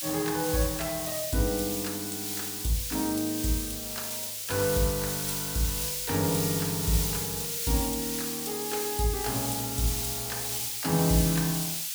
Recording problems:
hiss; slope +7 dB per octave, SNR 0 dB

